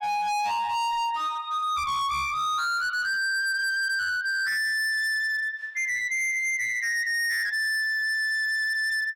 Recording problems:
distortion; hard clipping, signal-to-distortion ratio 7 dB

